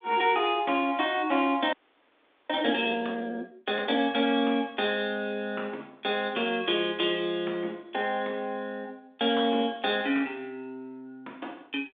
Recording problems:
telephone audio; 240 Hz to 3.8 kHz, G.726
frozen audio; at 1.5 s for 1 s

